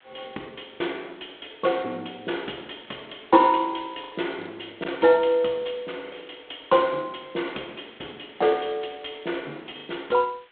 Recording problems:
phone line; 220 Hz to 3.5 kHz, G.726
background hiss; SNR 29 dB
packet loss; 4% of the sound replaced, filled with the last packet

